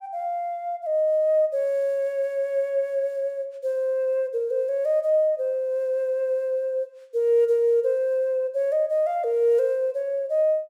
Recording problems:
none

